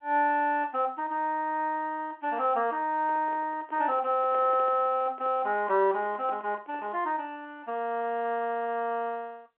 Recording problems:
telephone audio; 220 Hz to 3.4 kHz, G.711
handling noise; from 3 to 7 s; peak -11 dB vs average level

